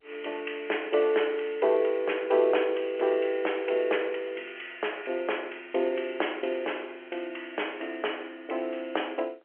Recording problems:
phone line; 320 Hz to 3.2 kHz, G.711

